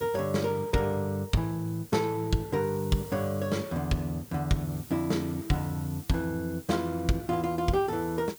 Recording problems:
background hiss; slope +1 dB per octave, SNR 18 dB

